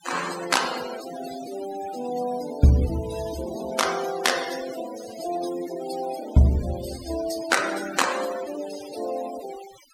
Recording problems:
denoising artefacts; signal-to-artefact ratio 12 dB

